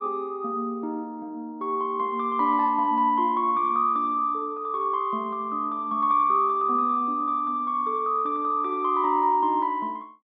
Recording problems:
treble cut off; nothing above 5.5 kHz

